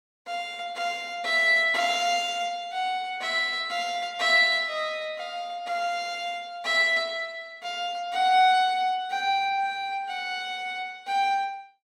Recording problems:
none

